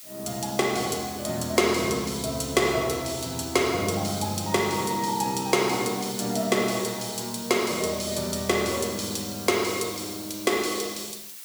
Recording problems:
hiss; slope +3 dB per octave, SNR 13 dB

